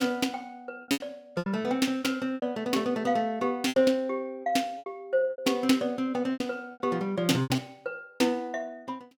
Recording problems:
lost packets; 10% of the sound replaced, filled with repeated pitch periods

